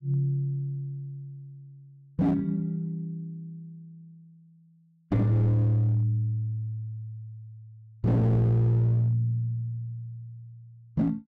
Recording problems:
distorted audio; hard clipping, signal-to-distortion ratio 11 dB

